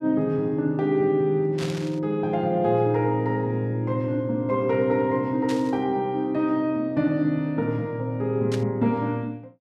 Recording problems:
burst of static; at 1.5 s, at 5.5 s and at 8.5 s; peak -6 dB vs average level

